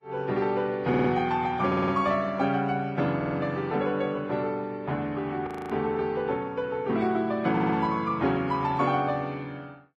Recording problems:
codec artefacts; Vorbis, then AAC, log-spectral distance 2 dB, nothing above 13.1 kHz
audio stuttering; 4 times, first at 1 s
frozen audio; at 5.5 s

